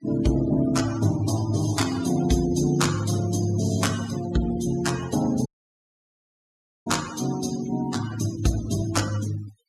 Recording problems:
noise reduction artefacts; signal-to-artefact ratio 14 dB
audio cutting out; at 5.5 s for 1.5 s

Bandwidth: 14.5 kHz